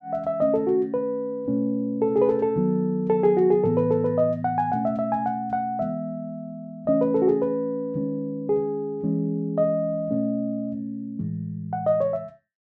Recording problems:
none

